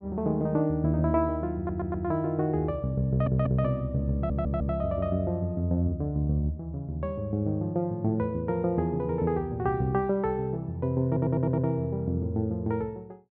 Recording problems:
audio stuttering; 4 times, first at 1.5 s

